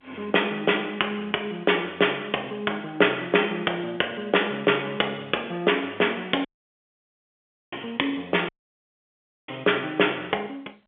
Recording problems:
phone line; 300 Hz to 3.5 kHz, G.711
dropout; at 6.5 s for 1.5 s and at 8.5 s for 1 s

